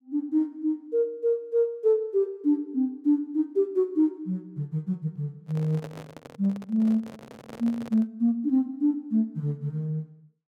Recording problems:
handling noise; from 5.5 to 8 s; peak -9 dB vs average level

